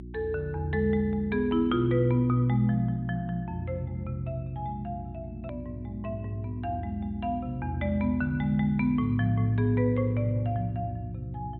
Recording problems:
low-pass filter; nothing above 4 kHz
hum; 60 Hz, harmonics up to 360 Hz, SNR 13 dB
click at an edit; at 5.5 s

